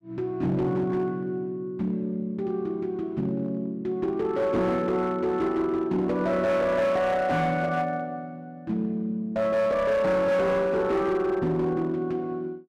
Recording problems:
distorted audio; hard clipping, uneven, signal-to-distortion ratio 12 dB

